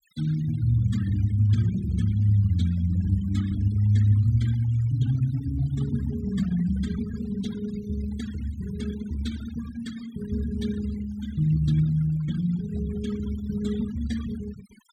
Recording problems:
denoising artefacts; signal-to-artefact ratio 18 dB

